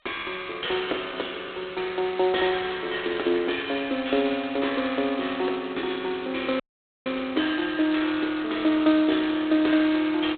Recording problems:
telephone audio; 280 Hz to 3.6 kHz, G.726
audio cutting out; at 6.5 s

